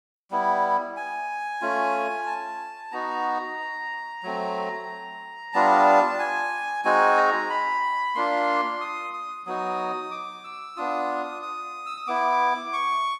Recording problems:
none

